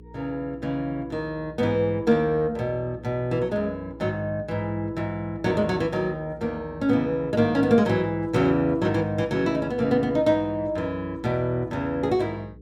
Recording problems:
electrical hum; 60 Hz, harmonics up to 480 Hz, SNR 22 dB

